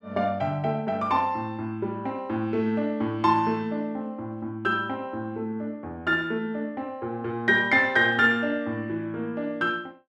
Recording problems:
none

